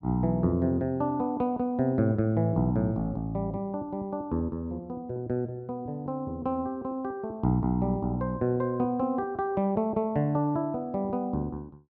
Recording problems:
none

